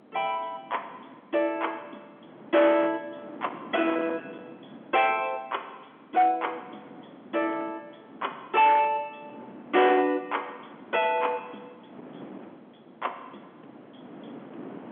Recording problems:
telephone audio; 220 Hz to 3.4 kHz, G.711
distorted audio; hard clipping, signal-to-distortion ratio 13 dB
wind noise; below 1.1 kHz, SNR 19 dB

